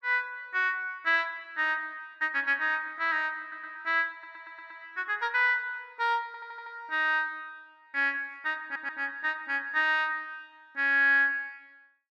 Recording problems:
audio stuttering; 4 times, first at 3.5 s

